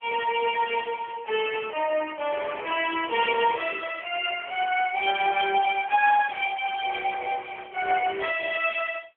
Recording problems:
telephone audio; 320 Hz to 3.1 kHz, AMR-NB
burst of static; at 4 s, at 5.5 s and at 7.5 s; peak -16 dB vs average level

